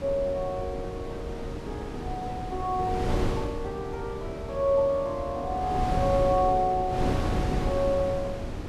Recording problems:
wind on the microphone; below 360 Hz, SNR 5 dB

